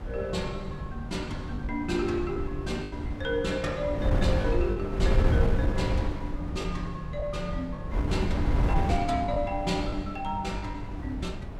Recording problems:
wind on the microphone; below 130 Hz, SNR 0 dB
lost packets; 4% of the sound replaced, filled with the last packet

